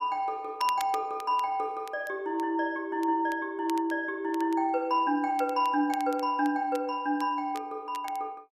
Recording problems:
crackle; vinyl, SNR 20 dB

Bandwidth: 14.5 kHz